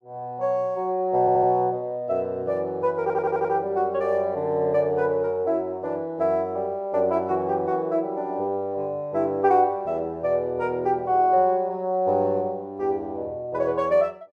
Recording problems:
audio stuttering; at 1 s and at 3 s

